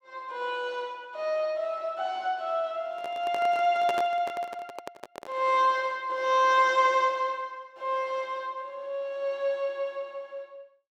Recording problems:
microphone handling noise; from 3 to 5.5 s; peak -1 dB vs average level

